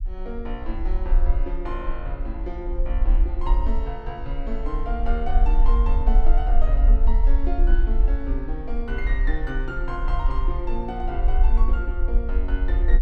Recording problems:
rumble; below 44 Hz, SNR -8 dB

